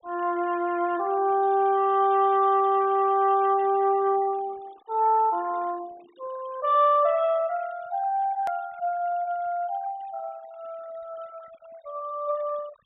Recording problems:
low-pass filter; nothing above 4 kHz
noise reduction artefacts; signal-to-artefact ratio 26 dB
hard cut with a click; at 8.5 s

